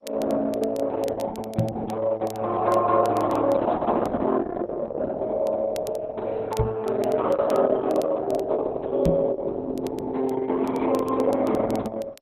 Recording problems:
codec artefacts; Opus, then MP2, log-spectral distance 3 dB
crackling; vinyl, SNR 23 dB
microphone thump; at 1.5 s, at 6.5 s and at 9 s; peak +4 dB vs average level

